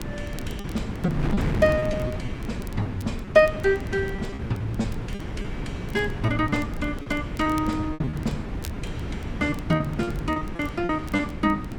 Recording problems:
wind on the microphone; below 290 Hz, SNR 6 dB
crackling; vinyl, SNR 25 dB
packet loss; 10% of the sound replaced, filled with repeated pitch periods

